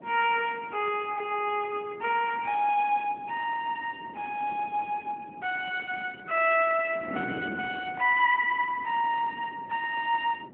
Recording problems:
telephone audio; 340 Hz to 3.7 kHz, AMR-NB
wind noise; below 440 Hz, SNR 17 dB

